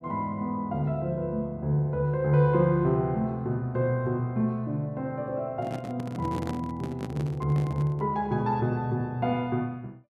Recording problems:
microphone handling noise; from 5.5 to 8 s; peak -3 dB vs average level

